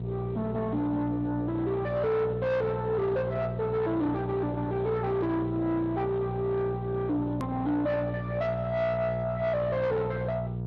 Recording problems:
codec artefacts; Speex, log-spectral distance 2 dB
distorted audio; soft clipping, signal-to-distortion ratio 10 dB
hum; 60 Hz, harmonics up to 780 Hz, SNR 5 dB
edit click; at 7.5 s

